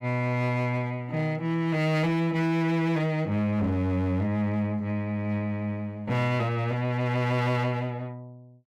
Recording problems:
distorted audio; hard clipping, signal-to-distortion ratio 11 dB

